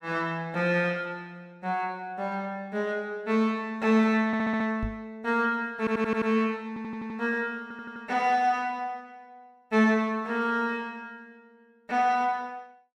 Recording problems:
stutter; 4 times, first at 4.5 s
knock on the microphone; at 5 s; peak -2 dB vs average level

